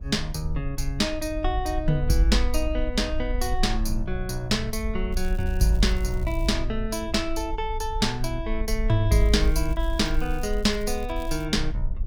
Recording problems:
low-frequency rumble; below 52 Hz, SNR 6 dB
crackling; from 5 to 6.5 s and from 9 to 11 s; loose cable, SNR 24 dB

